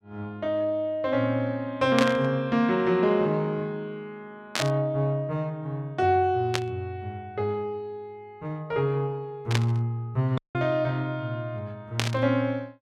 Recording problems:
static burst; 5 times, first at 2 s; peak +5 dB vs average level
audio cutting out; at 10 s

